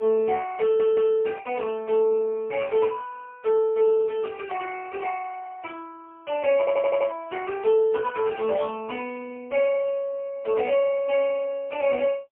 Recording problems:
phone line; 260 Hz to 3.3 kHz, AMR-NB, then MP3
audio stuttering; at 0.5 s and at 6.5 s

